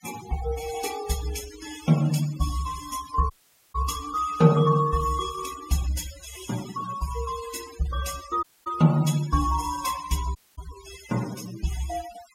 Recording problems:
noise reduction artefacts; signal-to-artefact ratio 15 dB
dropout; at 3.5 s, at 8.5 s and at 10 s

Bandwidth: 16 kHz